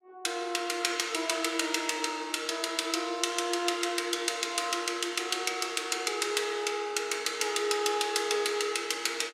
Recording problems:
none

